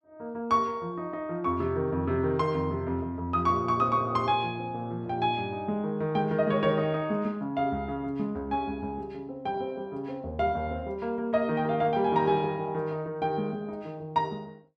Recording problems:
none

